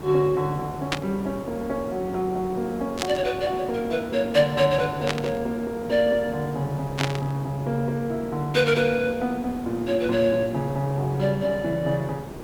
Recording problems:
hiss; slope -8 dB per octave, SNR 12 dB
burst of static; 4 times, first at 1 s; peak +4 dB vs average level

